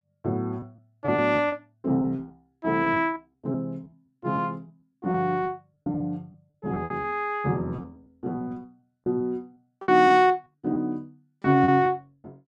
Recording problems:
lost packets; 12% of the sound replaced, filled with repeated pitch periods

